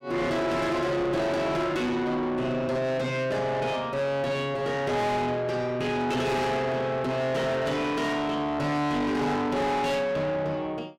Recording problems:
distortion; soft clipping, signal-to-distortion ratio 8 dB

